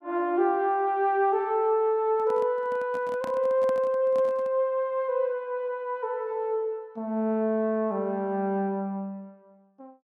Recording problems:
microphone handling noise; from 2 to 4.5 s; peak -8 dB vs average level

